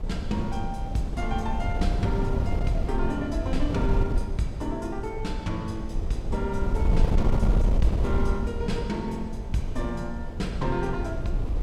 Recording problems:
wind on the microphone; below 90 Hz, SNR -2 dB

